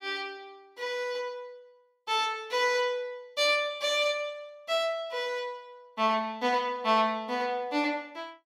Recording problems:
none

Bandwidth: 16 kHz